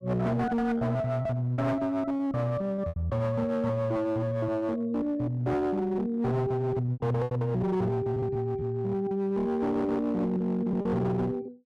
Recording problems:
distorted audio; hard clipping, uneven, signal-to-distortion ratio 10 dB
lost packets; 5% of the sound replaced, filled with repeated pitch periods

